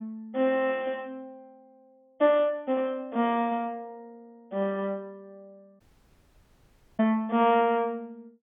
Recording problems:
treble cut off; nothing above 3.5 kHz
audio cutting out; at 6 s for 1 s

